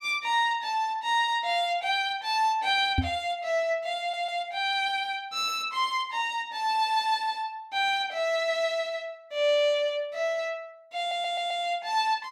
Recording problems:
knock on the microphone; at 3 s; peak +5 dB vs average level
audio stuttering; at 4 s and at 11 s

